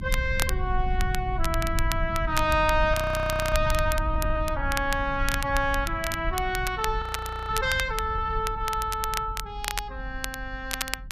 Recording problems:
rumble; below 74 Hz, SNR 5 dB
crackle; vinyl, SNR 8 dB
frozen audio; at 3 s for 0.5 s and at 7 s

